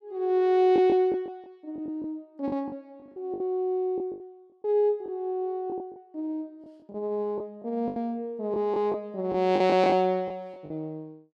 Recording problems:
lost packets; 10% of the sound replaced, filled with the last packet

